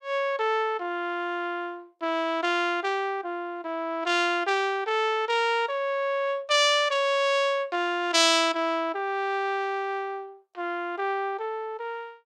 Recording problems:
none

